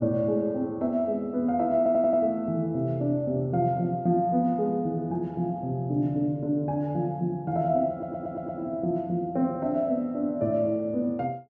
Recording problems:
audio stuttering; at 2 s and at 8 s

